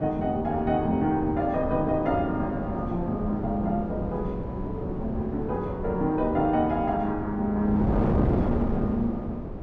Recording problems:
wind noise; below 400 Hz, SNR 4 dB

